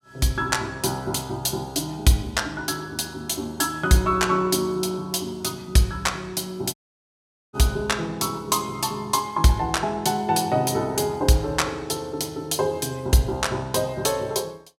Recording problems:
dropout; at 6.5 s for 1 s

